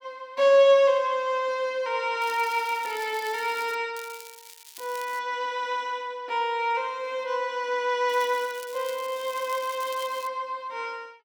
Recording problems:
crackle; from 2 to 4 s, from 4 to 5 s and from 8 to 10 s; loose cable, SNR 18 dB

